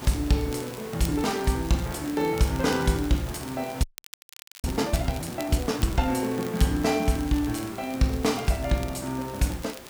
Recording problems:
background hiss; slope -5 dB per octave, SNR 14 dB
crackling; vinyl, SNR 19 dB
frozen audio; at 4 s for 1 s

